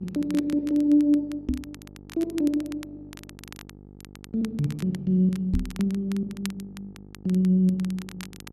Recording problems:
hum; 50 Hz, harmonics up to 900 Hz, SNR 22 dB
crackle; vinyl, SNR 21 dB
microphone thump; at 1.5 s and at 5.5 s; peak +2 dB vs average level

